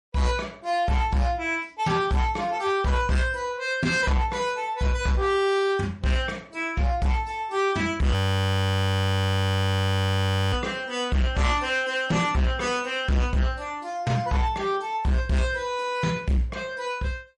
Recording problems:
codec artefacts; MP3, log-spectral distance 2 dB, nothing above 17.7 kHz
distortion; hard clipping, signal-to-distortion ratio 10 dB
frozen audio; at 8 s for 2.5 s

